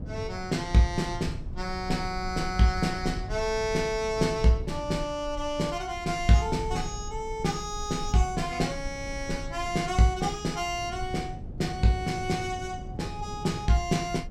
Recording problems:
low-frequency rumble; below 68 Hz, SNR 14 dB
wind on the microphone; below 200 Hz, SNR 16 dB

